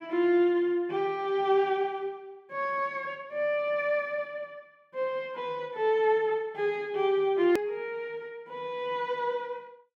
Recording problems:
edit click; at 7.5 s

